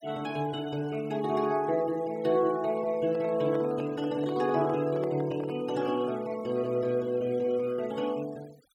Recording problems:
noise reduction artefacts; signal-to-artefact ratio 22 dB
handling noise; from 3 to 5.5 s; peak -7 dB vs average level

